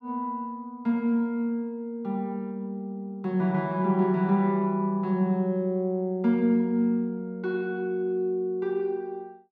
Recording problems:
none

